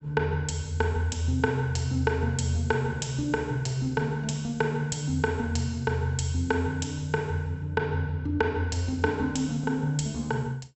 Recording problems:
treble missing; nothing above 7.9 kHz

